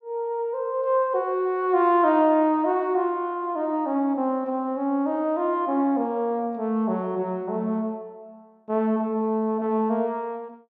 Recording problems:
none

